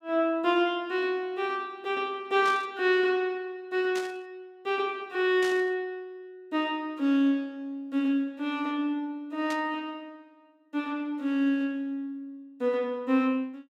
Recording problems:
static burst; 4 times, first at 2.5 s; peak -7 dB vs average level

